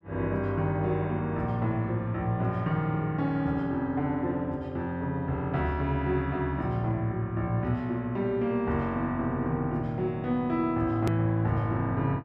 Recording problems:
edit click; at 11 s

